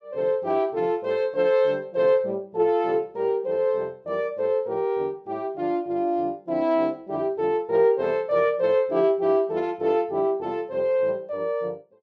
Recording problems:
none

